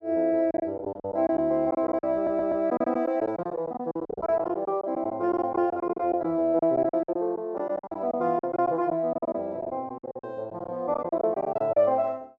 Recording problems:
packet loss; 15% of the sound replaced, filled with silence
audio stuttering; at 2 s

